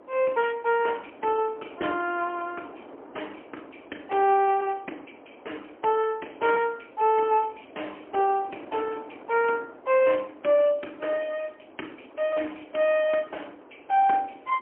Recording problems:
phone line; 240 Hz to 3.2 kHz, AMR-NB, then MP3
wind on the microphone; below 810 Hz, SNR 22 dB

